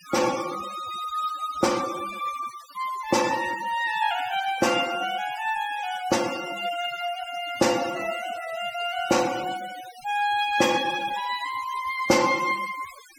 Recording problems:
denoising artefacts; signal-to-artefact ratio 14 dB

